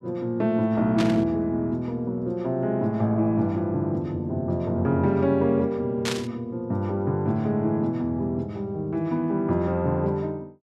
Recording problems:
static burst; at 1 s and at 6 s; peak +1 dB vs average level

